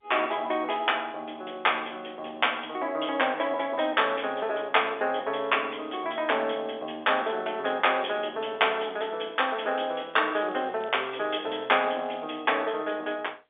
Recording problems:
telephone audio; 300 Hz to 3.6 kHz, G.711
crackle; at 5.5 s and from 9.5 to 12 s; loose cable, SNR 27 dB

